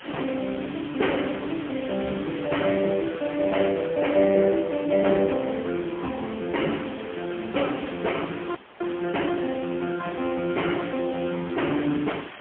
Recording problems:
phone line; 170 Hz to 3.4 kHz, AMR-NB, then MP3
background hiss; SNR 15 dB
audio freezing; at 8.5 s

